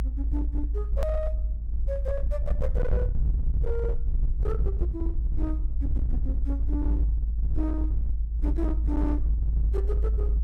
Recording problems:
distortion; hard clipping, signal-to-distortion ratio 11 dB
hum; 60 Hz, harmonics up to 1.1 kHz, SNR 23 dB
rumble; below 56 Hz, strongest tone 54 Hz, SNR -7 dB
hard cut with a click; at 1 s

